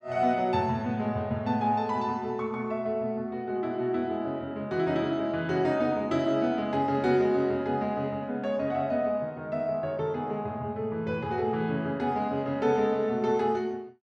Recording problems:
none

